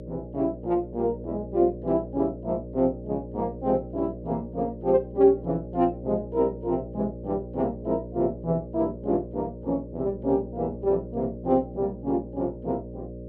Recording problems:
hum; 60 Hz, harmonics up to 600 Hz, SNR 12 dB

